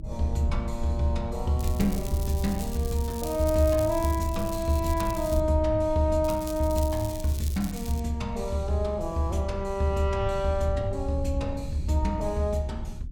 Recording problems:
low-frequency rumble; below 84 Hz, SNR 10 dB
crackling; from 1.5 to 5.5 s and from 6 to 8 s; loose cable, SNR 14 dB

